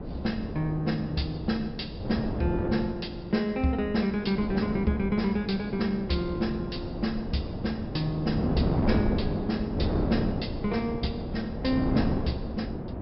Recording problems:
low-pass filter; nothing above 5.5 kHz
wind noise; below 390 Hz, SNR 3 dB

